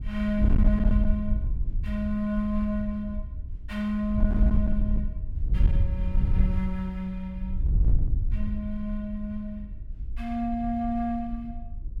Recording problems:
distorted audio; hard clipping, uneven, signal-to-distortion ratio 12 dB
wind on the microphone; below 70 Hz, SNR -1 dB

